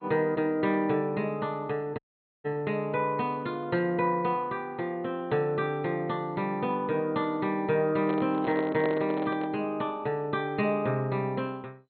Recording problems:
lossy compression; MP2, log-spectral distance 2 dB, nothing above 4.2 kHz
audio cutting out; at 2 s
microphone handling noise; from 8 to 9.5 s; peak -1 dB vs average level

